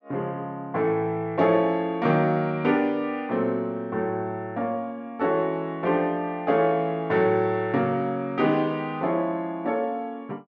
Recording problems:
none

